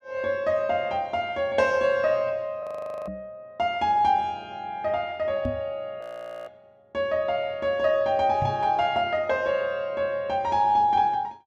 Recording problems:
audio freezing; at 2.5 s and at 6 s
microphone bump; at 3 s, at 5.5 s and at 8.5 s; peak -2 dB vs average level

